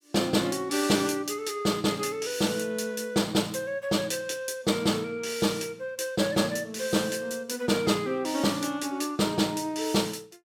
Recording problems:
none

